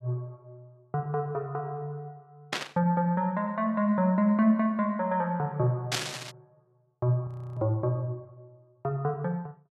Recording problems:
burst of static; at 2.5 s and at 6 s; peak +4 dB vs average level
frozen audio; at 7.5 s

